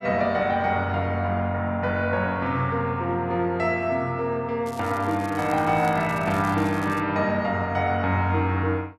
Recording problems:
crackle; from 4.5 to 7 s; loose cable, SNR 22 dB

